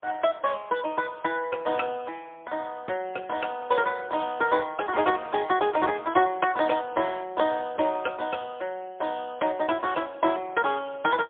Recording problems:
phone line; 240 Hz to 3.4 kHz, AMR-NB, then MP3

